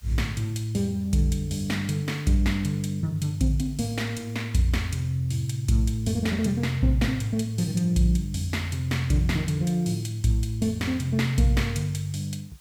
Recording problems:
background hiss; slope +2 dB per octave, SNR 30 dB

